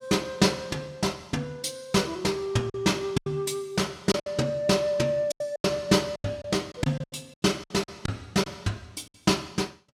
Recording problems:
lost packets; 8% of the sound replaced, filled with silence

